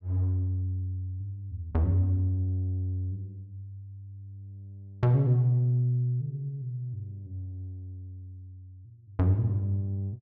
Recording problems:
none

